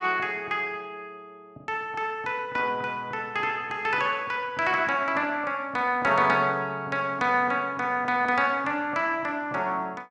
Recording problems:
none

